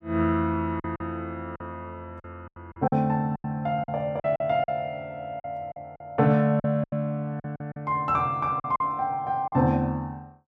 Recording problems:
lost packets; 10% of the sound replaced, filled with silence

